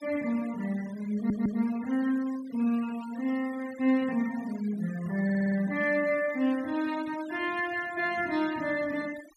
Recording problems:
noise reduction artefacts; signal-to-artefact ratio 20 dB
stutter; at 1 s and at 5 s

